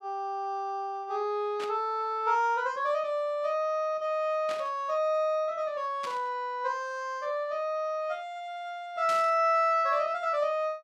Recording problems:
burst of static; 4 times, first at 1.5 s; peak -7 dB vs average level

